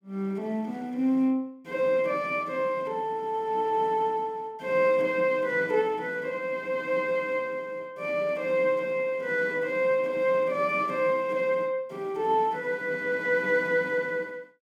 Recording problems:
none

